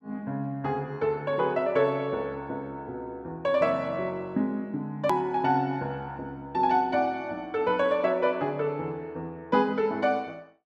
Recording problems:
click at an edit; at 5 s

